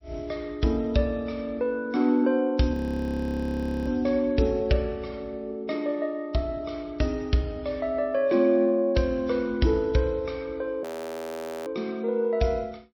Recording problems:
codec artefacts; MP3, log-spectral distance 2 dB
frozen audio; at 2.5 s for 1 s and at 11 s for 1 s

